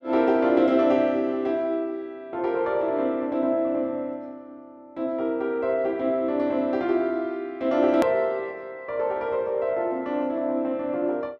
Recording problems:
hard cut with a click; at 8 s

